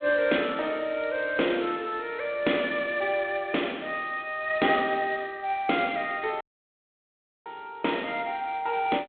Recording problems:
telephone audio; 240 Hz to 3.7 kHz, G.726
audio cutting out; at 6.5 s for 1 s

